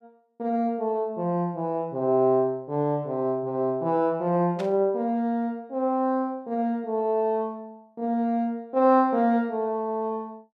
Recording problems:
burst of static; at 4.5 s; peak -10 dB vs average level

